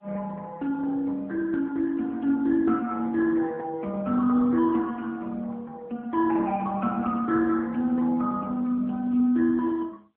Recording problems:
phone line; 190 Hz to 3.4 kHz, AMR-NB

